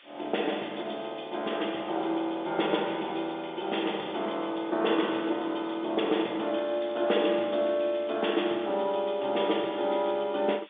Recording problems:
phone line; 240 Hz to 3.6 kHz, G.711
hiss; SNR 23 dB

